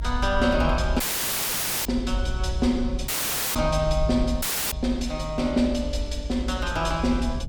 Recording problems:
mains hum; 60 Hz, harmonics up to 660 Hz, SNR 21 dB
rumble; below 62 Hz, SNR 5 dB
audio cutting out; at 1 s for 1 s, at 3 s and at 4.5 s

